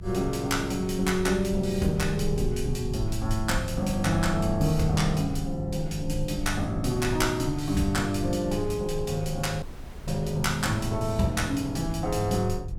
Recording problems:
electrical hum; 50 Hz, harmonics up to 550 Hz, SNR 14 dB
rumble; below 64 Hz, strongest tone 20 Hz, SNR 11 dB
dropout; at 9.5 s

